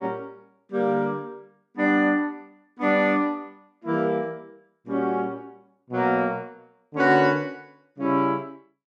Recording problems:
none

